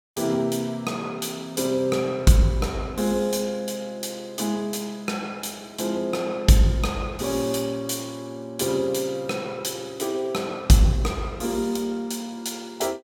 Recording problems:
none

